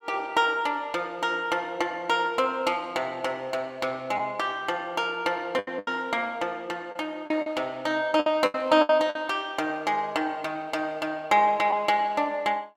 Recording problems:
lost packets; 4% of the sound replaced, filled with the last packet

